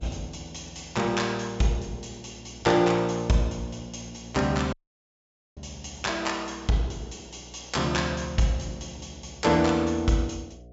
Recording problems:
treble missing; nothing above 8 kHz
electrical hum; 60 Hz, harmonics up to 720 Hz, SNR 23 dB
audio cutting out; at 4.5 s for 1 s

